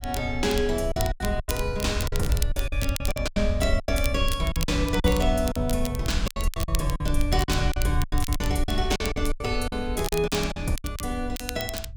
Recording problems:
rumble; below 74 Hz, SNR 3 dB
crackling; vinyl, SNR 10 dB
packet loss; 15% of the sound replaced, filled with silence

